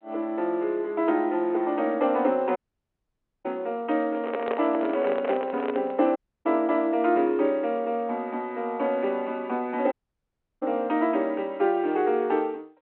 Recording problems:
phone line; 260 Hz to 3.2 kHz, G.726
audio cutting out; at 2.5 s for 1 s, at 6 s and at 10 s for 0.5 s
microphone handling noise; from 4 to 6 s; peak +1 dB vs average level

